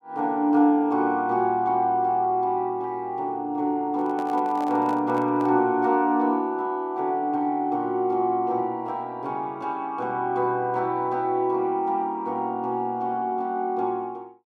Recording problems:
handling noise; from 4 to 5.5 s; peak -10 dB vs average level

